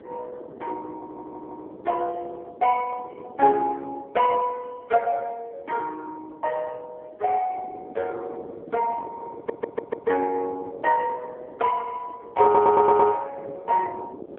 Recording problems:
telephone audio; 320 Hz to 3 kHz, AMR-NB
wind noise; below 520 Hz, SNR 18 dB
audio stuttering; at 1 s, at 9.5 s and at 12 s

